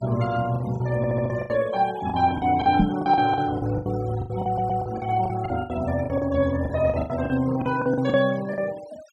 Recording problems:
denoising artefacts; signal-to-artefact ratio 20 dB
packet loss; 16% of the sound replaced, filled with the last packet
stutter; at 1 s and at 4.5 s
microphone bump; at 3 s; peak +7 dB vs average level

